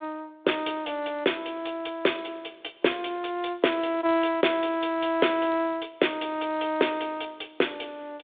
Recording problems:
telephone audio; 280 Hz to 3.6 kHz, G.726

